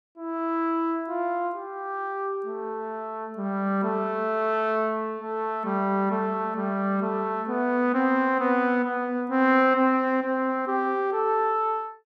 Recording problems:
none

